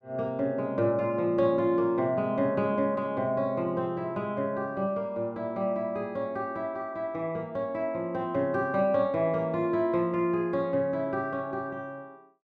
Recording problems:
none

